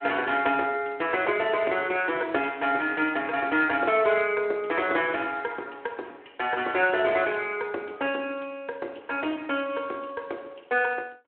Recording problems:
phone line; 300 Hz to 3.3 kHz, Speex

